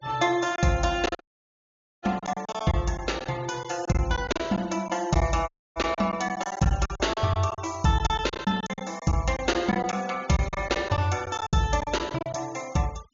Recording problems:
low-pass filter; nothing above 7.1 kHz
noise reduction artefacts; signal-to-artefact ratio 22 dB
packet loss; 12% of the sound replaced, filled with silence
dropout; at 1 s for 1 s and at 5.5 s

